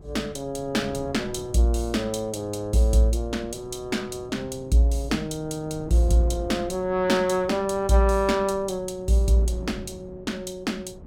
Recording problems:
wind noise; below 280 Hz, SNR 18 dB

